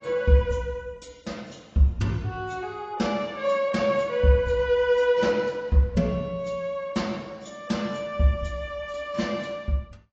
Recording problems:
lossy compression; AAC, log-spectral distance 2 dB

